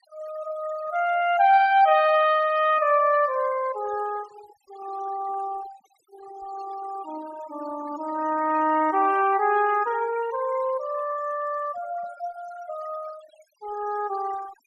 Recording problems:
denoising artefacts; signal-to-artefact ratio 20 dB

